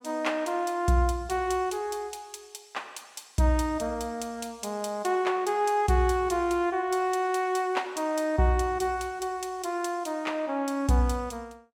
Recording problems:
none

